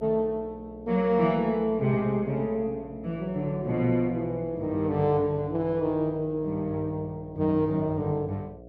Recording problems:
hum; 60 Hz, harmonics up to 720 Hz, SNR 19 dB

